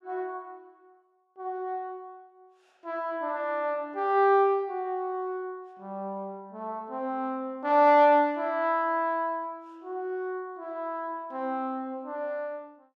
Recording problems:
none

